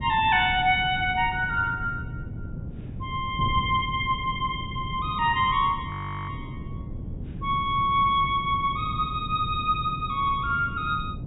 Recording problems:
treble cut off; nothing above 4 kHz
wind on the microphone; below 180 Hz, SNR 10 dB
audio freezing; at 6 s

